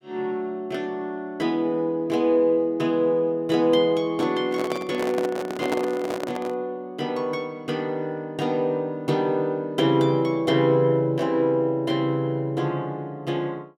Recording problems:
microphone handling noise; from 4.5 to 6.5 s; peak +1 dB vs average level

